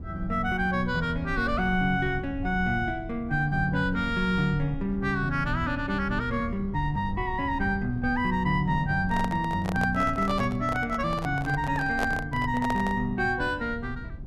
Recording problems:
low-frequency rumble; below 130 Hz, SNR 11 dB
handling noise; from 9 to 13 s; peak 0 dB vs average level

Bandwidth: 13.5 kHz